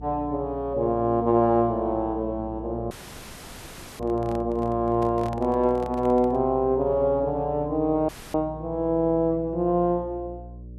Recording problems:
hum; 60 Hz, harmonics up to 540 Hz, SNR 16 dB
dropout; at 3 s for 1 s and at 8 s
microphone handling noise; from 4 to 6.5 s; peak -10 dB vs average level

